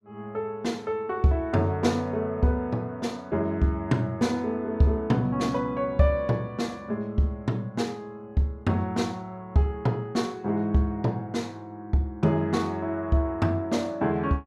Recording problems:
none

